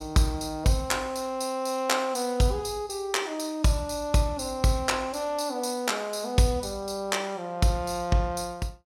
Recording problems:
none

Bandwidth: 16 kHz